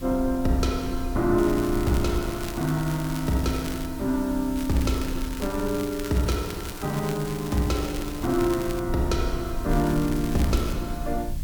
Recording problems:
hiss; slope -1 dB per octave, SNR 18 dB
rumble; below 60 Hz, SNR 10 dB
crackling; from 1.5 to 4 s, from 4.5 to 9 s and from 9.5 to 11 s; loose cable, SNR 14 dB

